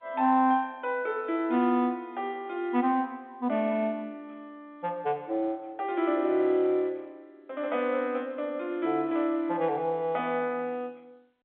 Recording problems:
telephone audio; 220 Hz to 3.6 kHz, G.711

